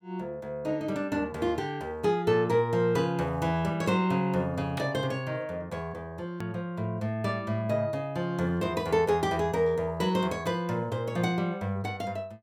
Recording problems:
click at an edit; at 6.5 s

